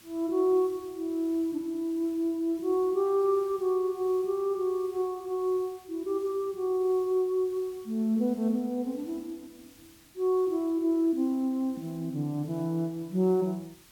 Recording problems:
hiss; slope 0 dB per octave, SNR 26 dB

